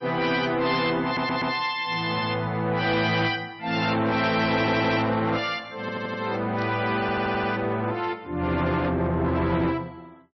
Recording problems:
codec artefacts; MP3, log-spectral distance 3 dB, nothing above 5.7 kHz
distortion; soft clipping, signal-to-distortion ratio 12 dB
audio stuttering; 4 times, first at 1 s
static burst; at 2 s and at 6.5 s; peak -15 dB vs average level

